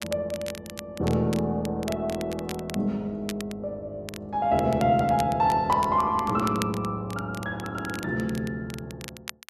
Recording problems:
crackle; vinyl, SNR 16 dB

